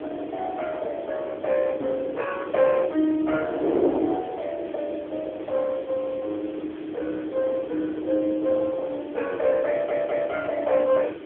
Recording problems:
phone line; 280 Hz to 3.2 kHz, AMR-NB
hiss; SNR 23 dB
wind noise; below 510 Hz, SNR 7 dB
stutter; at 9.5 s

